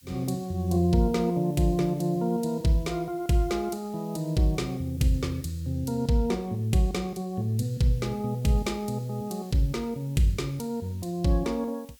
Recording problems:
hiss; SNR 27 dB

